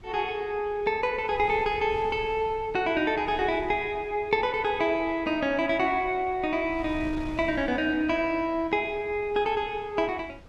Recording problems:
wind on the microphone; below 250 Hz, SNR 19 dB

